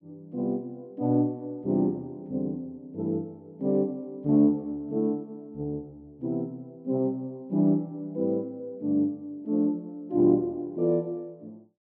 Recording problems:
none

